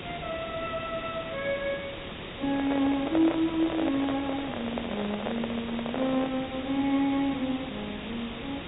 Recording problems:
treble missing; nothing above 4 kHz
background hiss; SNR 9 dB
handling noise; from 2.5 to 6.5 s; peak +2 dB vs average level

